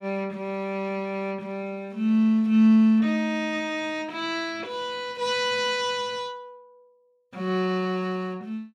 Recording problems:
none

